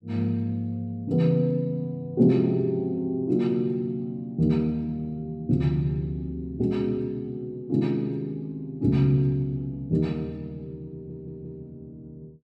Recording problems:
audio stuttering; at 11 s

